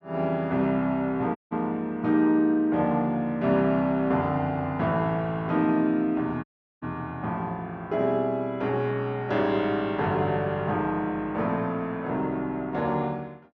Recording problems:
dropout; at 1.5 s and at 6.5 s

